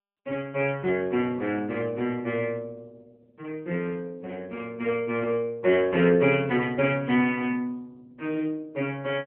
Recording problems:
phone line; 190 Hz to 3.1 kHz, AMR-NB

